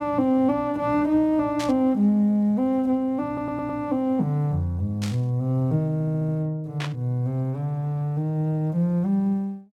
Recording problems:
burst of static; at 1.5 s, at 5 s and at 7 s; peak -5 dB vs average level
stutter; at 3.5 s and at 6 s

